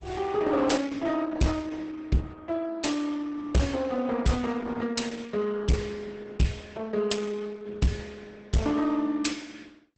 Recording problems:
codec artefacts; Opus, log-spectral distance 4 dB, nothing above 8.2 kHz
distortion; hard clipping, uneven, signal-to-distortion ratio 6 dB

